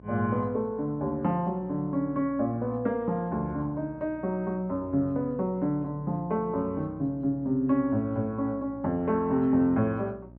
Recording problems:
hum; 60 Hz, harmonics up to 960 Hz, SNR 21 dB

